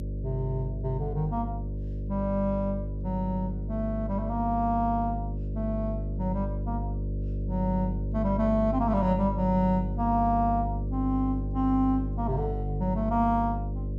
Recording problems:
hum; 50 Hz, harmonics up to 600 Hz, SNR 4 dB

